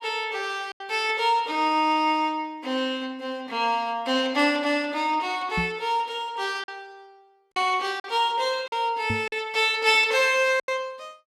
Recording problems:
lost packets; 3% of the sound replaced, filled with silence
knock on the microphone; at 5.5 s and at 9 s; peak -2 dB vs average level

